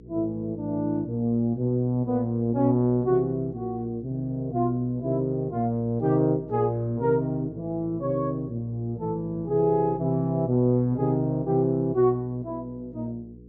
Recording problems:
treble cut off; nothing above 8 kHz
hum; 60 Hz, harmonics up to 480 Hz, SNR 22 dB

